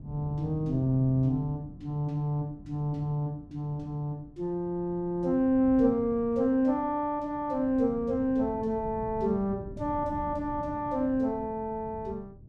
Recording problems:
wind noise; below 190 Hz, SNR 15 dB

